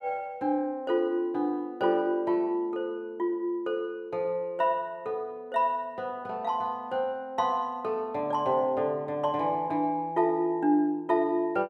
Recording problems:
none

